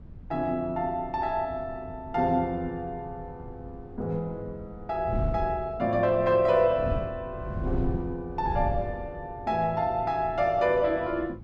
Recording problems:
wind on the microphone; below 140 Hz, SNR 11 dB

